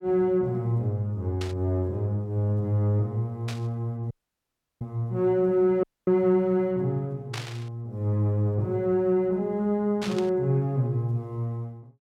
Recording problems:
static burst; 4 times, first at 1.5 s; peak -5 dB vs average level
audio cutting out; at 4 s for 0.5 s and at 6 s

